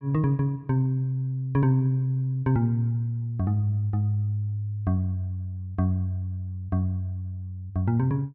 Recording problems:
none

